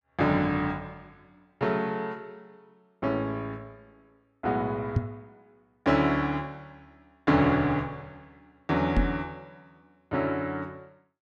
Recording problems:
microphone bump; at 5 s and at 9 s; peak +7 dB vs average level

